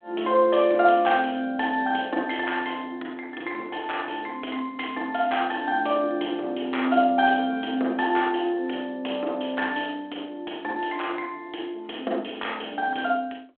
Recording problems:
phone line; 240 Hz to 3.5 kHz, G.726

